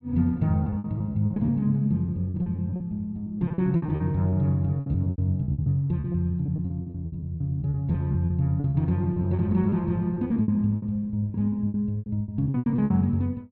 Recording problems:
packet loss; 18% of the sound replaced, filled with repeated pitch periods

